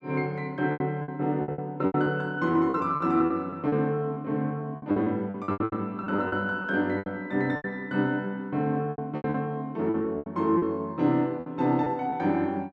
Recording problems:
packet loss; 14% of the sound replaced, filled with repeated pitch periods

